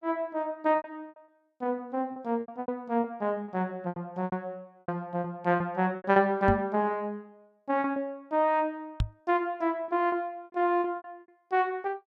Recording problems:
packet loss; 11% of the sound replaced, filled with repeated pitch periods
knock on the microphone; at 6.5 s and at 9 s; peak +5 dB vs average level

